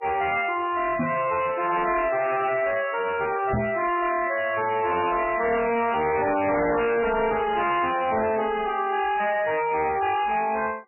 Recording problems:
codec artefacts; MP3, log-spectral distance 5 dB, nothing above 2.6 kHz
distortion; soft clipping, signal-to-distortion ratio 7 dB
microphone thump; at 1 s and at 3.5 s; peak +1 dB vs average level

